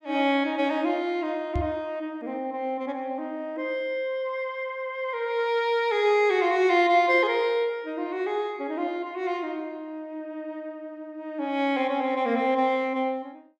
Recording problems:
microphone thump; at 1.5 s; peak +1 dB vs average level

